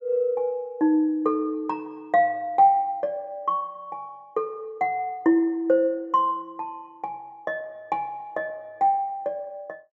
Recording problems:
none

